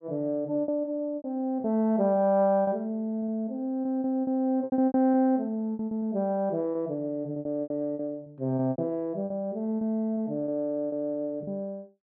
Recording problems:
lost packets; 13% of the sound replaced, filled with repeated pitch periods

